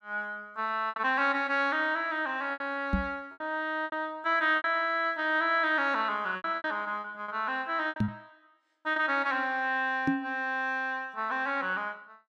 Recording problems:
lost packets; 7% of the sound replaced, filled with repeated pitch periods
microphone thump; at 3 s, at 8 s and at 10 s; peak +5 dB vs average level

